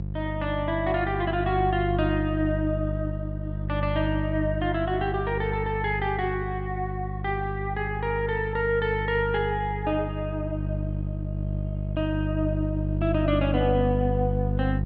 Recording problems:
hum; 50 Hz, harmonics up to 500 Hz, SNR 3 dB

